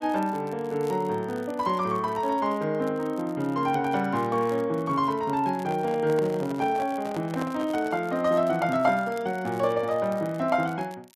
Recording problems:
crackling; vinyl, SNR 27 dB
microphone handling noise; from 5.5 to 8 s; peak -5 dB vs average level

